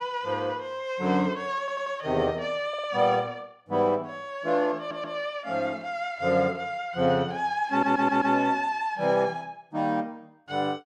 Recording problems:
audio stuttering; 4 times, first at 1.5 s

